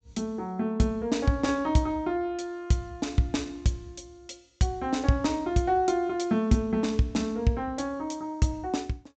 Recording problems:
low-pass filter; nothing above 8 kHz

